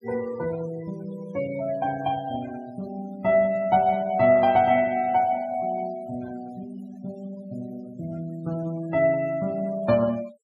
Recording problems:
denoising artefacts; signal-to-artefact ratio 21 dB

